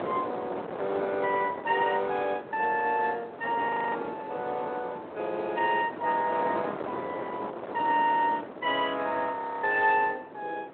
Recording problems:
phone line; 300 Hz to 3.7 kHz, Speex
wind noise; below 910 Hz, SNR 10 dB
audio freezing; at 3.5 s and at 9.5 s

